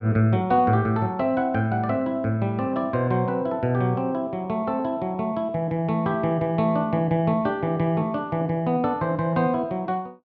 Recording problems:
none

